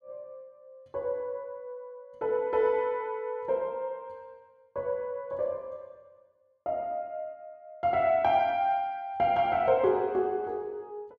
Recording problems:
none

